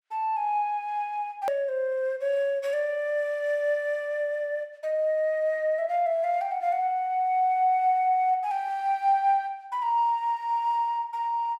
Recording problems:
edit click; at 1.5 s

